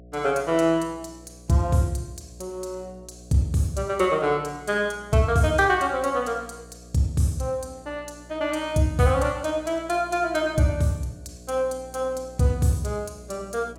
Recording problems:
hum; 60 Hz, harmonics up to 720 Hz, SNR 22 dB

